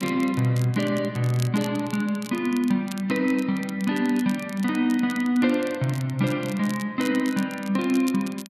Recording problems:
crackling; vinyl, SNR 18 dB

